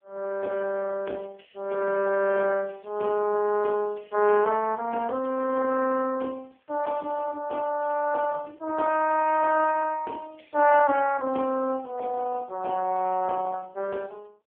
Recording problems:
phone line; 240 Hz to 2.5 kHz, AMR-NB

